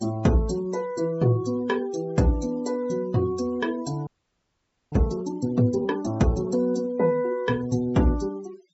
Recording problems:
treble cut off; nothing above 8 kHz
noise reduction artefacts; signal-to-artefact ratio 24 dB
audio freezing; at 4 s for 1 s

